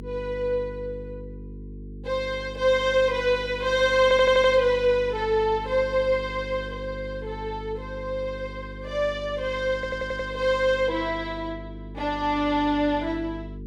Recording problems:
electrical hum; 50 Hz, harmonics up to 450 Hz, SNR 14 dB
stutter; at 4 s and at 9.5 s

